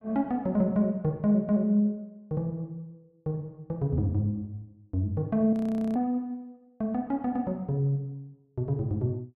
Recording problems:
audio freezing; at 5.5 s

